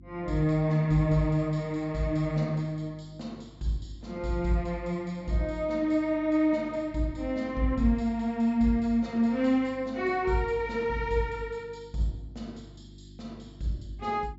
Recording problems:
treble missing; nothing above 7.5 kHz
hum; 50 Hz, harmonics up to 350 Hz, SNR 23 dB

